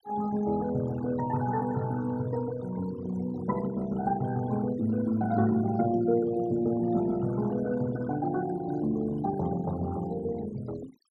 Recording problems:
noise reduction artefacts; signal-to-artefact ratio 18 dB

